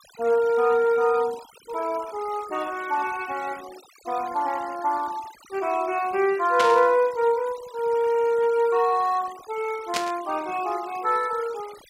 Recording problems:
noise reduction artefacts; signal-to-artefact ratio 20 dB
static burst; at 6.5 s and at 10 s; peak +1 dB vs average level

